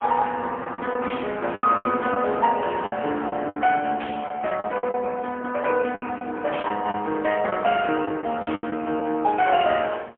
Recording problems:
telephone audio; 260 Hz to 3.3 kHz, AMR-NB, then MP3
lost packets; 10% of the sound replaced, filled with the last packet
burst of static; 4 times, first at 1 s; peak -5 dB vs average level

